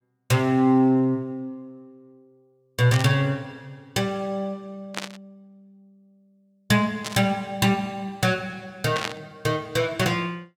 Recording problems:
static burst; 4 times, first at 3 s; peak 0 dB vs average level

